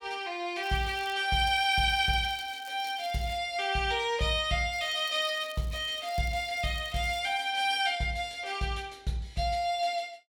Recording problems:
crackle; at 0.5 s, from 1.5 to 3.5 s and from 4.5 to 7 s; loose cable, SNR 23 dB

